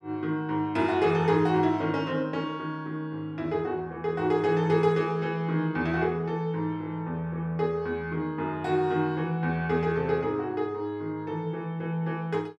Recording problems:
none

